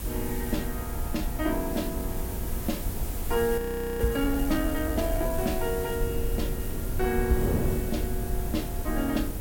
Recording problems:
background hiss; slope -1 dB per octave, SNR 8 dB
low-frequency rumble; below 62 Hz, SNR 6 dB
wind on the microphone; below 340 Hz, SNR 6 dB
audio freezing; at 3.5 s

